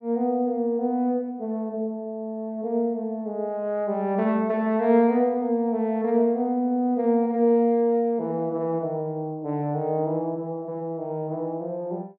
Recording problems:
none

